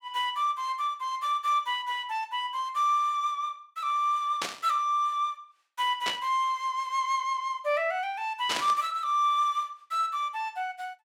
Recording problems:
static burst; at 4.5 s, at 6 s and at 8.5 s; peak +2 dB vs average level

